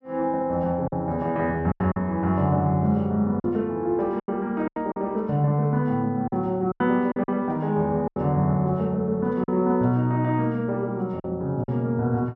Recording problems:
lost packets; 7% of the sound replaced, filled with silence

